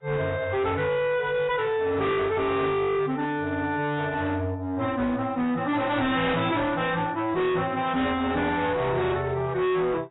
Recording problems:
codec artefacts; AAC, log-spectral distance 3 dB, nothing above 3.8 kHz
distortion; hard clipping, signal-to-distortion ratio 8 dB

